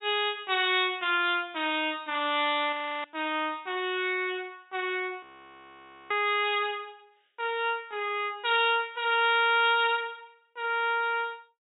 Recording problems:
treble missing; nothing above 4 kHz
audio freezing; at 2.5 s and at 5 s for 1 s

